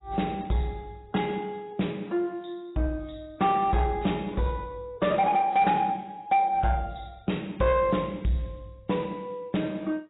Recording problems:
lossy compression; AAC, log-spectral distance 3 dB, nothing above 3.8 kHz
distorted audio; soft clipping, signal-to-distortion ratio 11 dB

